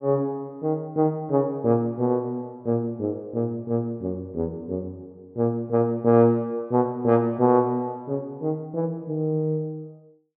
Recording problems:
none

